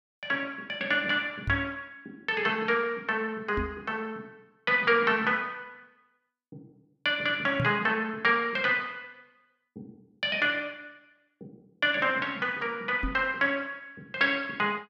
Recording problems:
microphone thump; 4 times, first at 1.5 s; peak 0 dB vs average level

